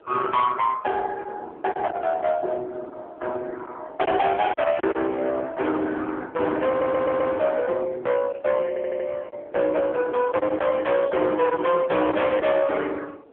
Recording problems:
phone line; 280 Hz to 4 kHz, AMR-NB
distorted audio; hard clipping, uneven, signal-to-distortion ratio 7 dB
wind noise; below 820 Hz, SNR 19 dB
lost packets; 3% of the sound replaced, filled with silence
stutter; at 6.5 s and at 8.5 s

